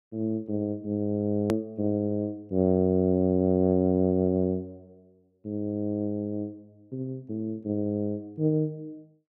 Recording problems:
edit click; at 1.5 s

